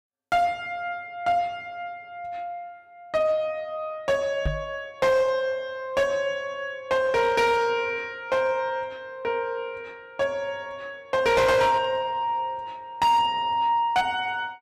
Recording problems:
distorted audio; hard clipping, signal-to-distortion ratio 11 dB
knock on the microphone; at 4.5 s; peak +2 dB vs average level

